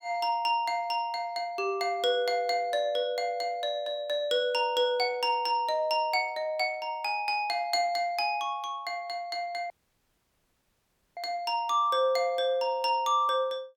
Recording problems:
dropout; at 9.5 s for 1.5 s

